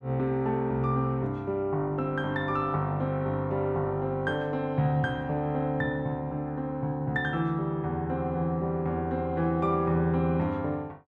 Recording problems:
none

